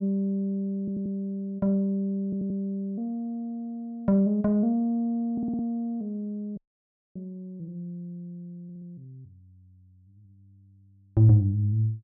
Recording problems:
stutter; 4 times, first at 1 s
audio cutting out; at 6.5 s for 0.5 s

